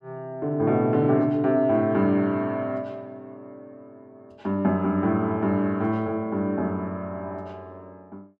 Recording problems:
none

